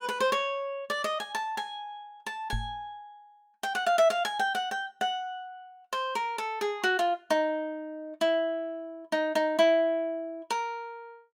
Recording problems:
microphone bump; at 2.5 s; peak -1 dB vs average level

